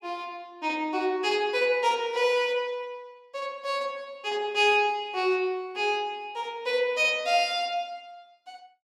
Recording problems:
none

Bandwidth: 15.5 kHz